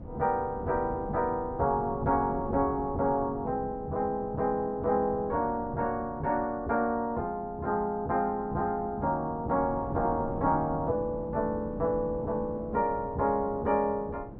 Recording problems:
low-pass filter; nothing above 6.4 kHz
wind noise; below 340 Hz, SNR 13 dB

